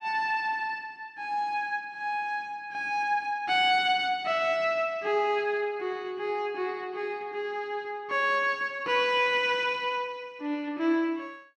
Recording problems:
none

